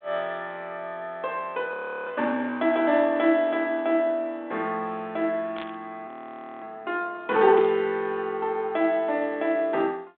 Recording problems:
telephone audio; 220 Hz to 3.6 kHz, G.726
frozen audio; at 1.5 s and at 6 s for 0.5 s
burst of static; at 5.5 s and at 7.5 s; peak -10 dB vs average level

